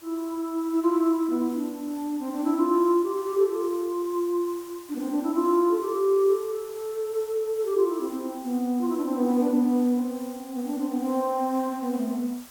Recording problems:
background hiss; SNR 21 dB

